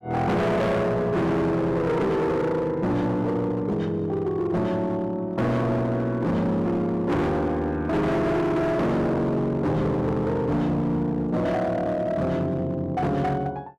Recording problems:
distortion; hard clipping, signal-to-distortion ratio 7 dB

